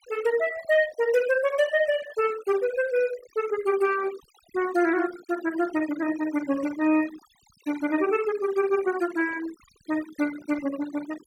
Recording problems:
denoising artefacts; signal-to-artefact ratio 17 dB

